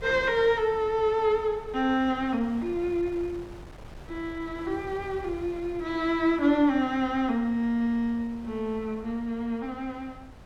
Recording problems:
wind on the microphone; below 470 Hz, SNR 19 dB

